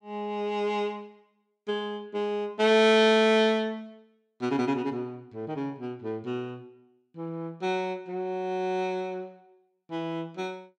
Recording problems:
none

